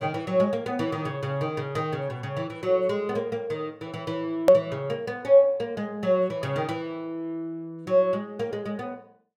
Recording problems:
hard cut with a click; at 4.5 s

